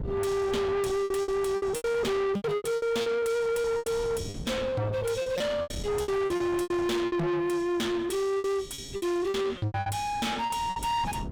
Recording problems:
distortion; soft clipping, signal-to-distortion ratio 7 dB
wind noise; below 500 Hz, SNR 13 dB
lost packets; 15% of the sound replaced, filled with repeated pitch periods

